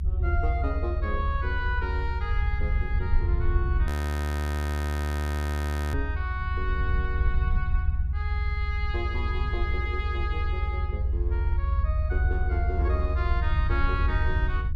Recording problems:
rumble; below 78 Hz, SNR -6 dB
frozen audio; at 4 s for 2 s

